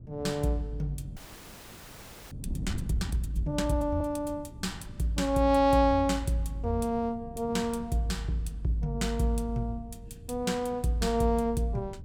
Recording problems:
wind noise; below 170 Hz, SNR 15 dB
frozen audio; at 1 s for 1 s

